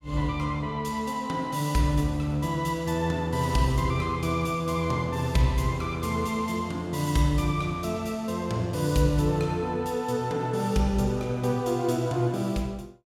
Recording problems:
none

